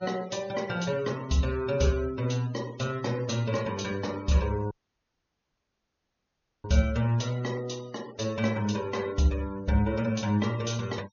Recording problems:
treble cut off; nothing above 6.7 kHz
noise reduction artefacts; signal-to-artefact ratio 21 dB
dropout; at 4.5 s for 2 s

